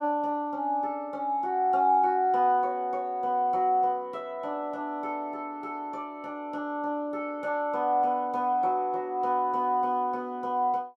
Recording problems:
none

